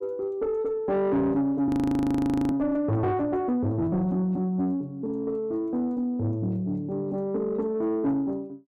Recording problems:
distortion; soft clipping, signal-to-distortion ratio 11 dB
frozen audio; at 1.5 s for 1 s

